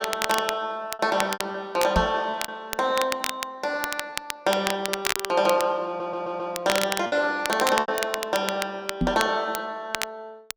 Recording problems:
crackling; vinyl, SNR 6 dB
packet loss; 5% of the sound replaced, filled with repeated pitch periods
knock on the microphone; at 2 s and at 9 s; peak +5 dB vs average level
audio stuttering; at 6 s

